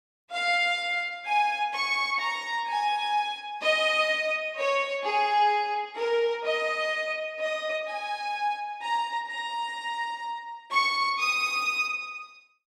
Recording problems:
none

